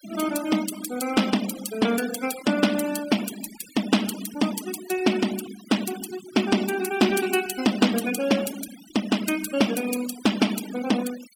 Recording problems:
noise reduction artefacts; signal-to-artefact ratio 12 dB

